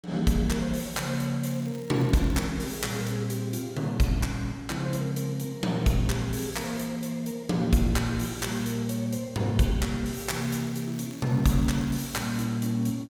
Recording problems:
crackling; from 1.5 to 2.5 s and from 10 to 12 s; loose cable, SNR 23 dB

